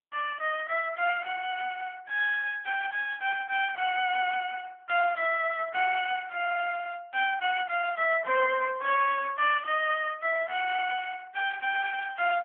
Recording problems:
phone line; 320 Hz to 2.9 kHz, AMR-NB

